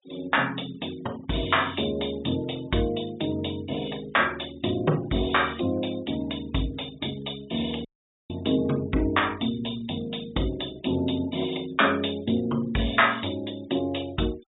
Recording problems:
treble missing; nothing above 4 kHz
denoising artefacts; signal-to-artefact ratio 21 dB
dropout; at 8 s

